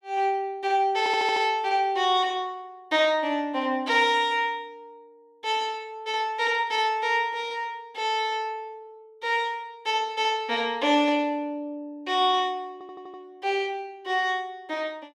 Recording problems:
audio stuttering; at 1 s and at 13 s

